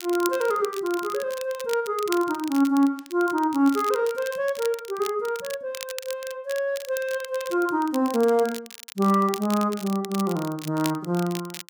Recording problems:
crackle; vinyl, SNR 14 dB

